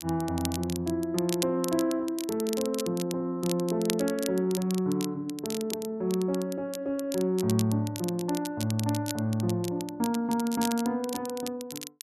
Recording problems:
crackle; vinyl, SNR 10 dB

